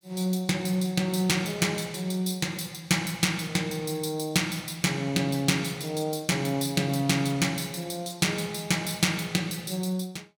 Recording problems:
none

